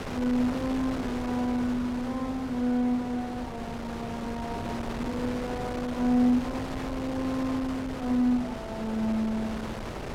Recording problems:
wind noise; below 1.1 kHz, SNR 7 dB

